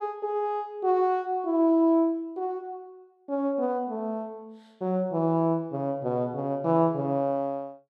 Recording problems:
none

